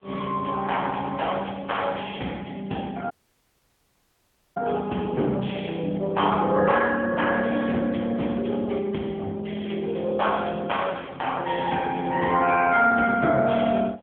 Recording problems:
telephone audio; 240 Hz to 3.3 kHz, AMR-NB
dropout; at 3 s for 1.5 s

